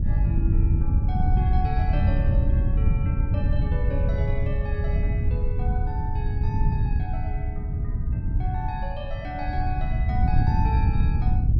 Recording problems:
wind on the microphone; below 110 Hz, SNR -10 dB

